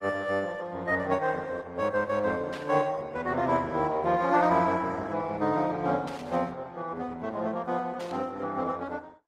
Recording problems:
codec artefacts; Opus, then Opus, log-spectral distance 3 dB
burst of static; at 2.5 s, at 6 s and at 8 s; peak -11 dB vs average level

